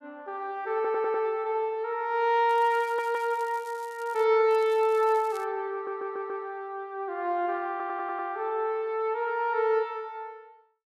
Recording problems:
stutter; 4 times, first at 1 s
crackle; from 2.5 to 4 s and at 4.5 s; loose cable, SNR 25 dB

